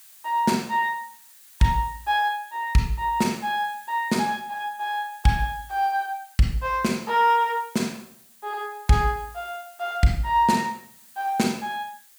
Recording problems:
hiss; SNR 24 dB

